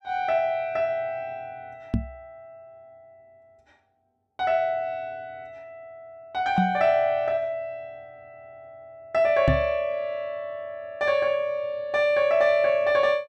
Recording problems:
knock on the microphone; at 2 s, at 6.5 s and at 9.5 s; peak +5 dB vs average level

